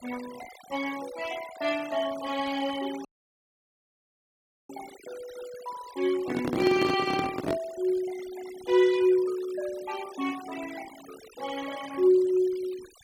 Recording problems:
denoising artefacts; signal-to-artefact ratio 17 dB
dropout; at 3 s for 1.5 s
microphone handling noise; from 6 to 7.5 s; peak +3 dB vs average level

